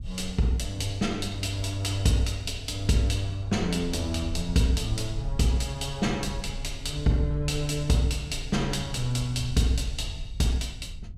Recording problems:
rumble; below 78 Hz, SNR 11 dB

